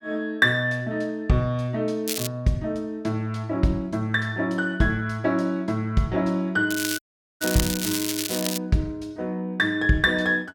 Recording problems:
crackling; at 2 s and from 6.5 to 8.5 s; loose cable, SNR 4 dB
audio cutting out; at 7 s

